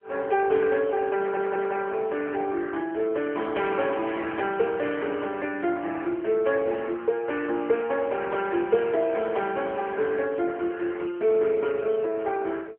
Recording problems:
phone line; 320 Hz to 3.7 kHz, AMR-NB
audio stuttering; at 1 s

